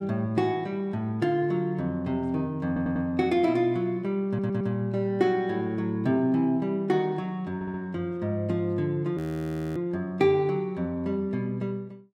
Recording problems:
stutter; at 2.5 s, at 4.5 s and at 7.5 s
audio freezing; at 9 s for 0.5 s

